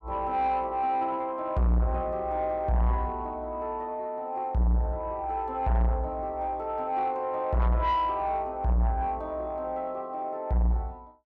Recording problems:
distortion; soft clipping, signal-to-distortion ratio 7 dB

